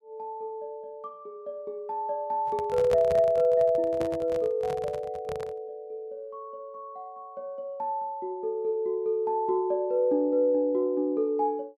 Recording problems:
handling noise; from 2.5 to 5.5 s; peak -2 dB vs average level

